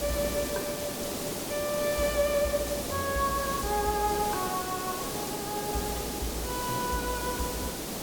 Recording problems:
hiss; SNR 2 dB

